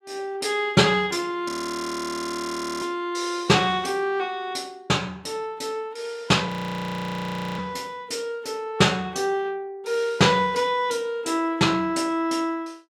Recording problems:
audio freezing; at 1.5 s for 1.5 s and at 6.5 s for 1 s

